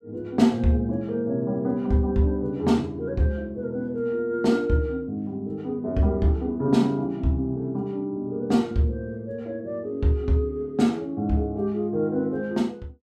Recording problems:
none

